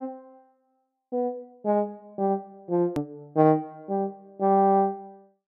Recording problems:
click at an edit; at 3 s

